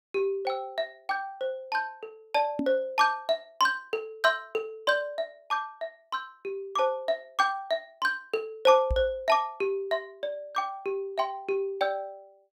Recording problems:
knock on the microphone; at 2.5 s and at 9 s; peak +2 dB vs average level

